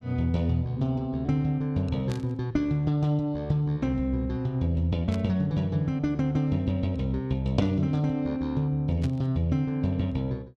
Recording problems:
static burst; at 2 s, at 5 s and at 9 s; peak -10 dB vs average level

